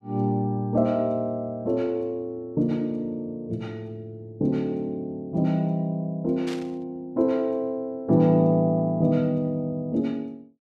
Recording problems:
burst of static; at 6.5 s; peak -9 dB vs average level

